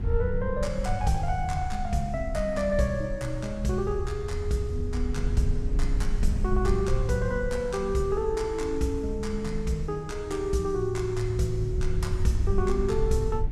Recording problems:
hum; 50 Hz, harmonics up to 350 Hz, SNR 20 dB
low-frequency rumble; below 66 Hz, SNR 5 dB

